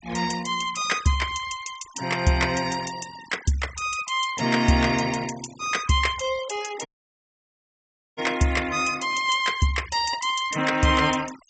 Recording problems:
treble missing; nothing above 8 kHz
noise reduction artefacts; signal-to-artefact ratio 18 dB
audio cutting out; at 7 s for 1.5 s

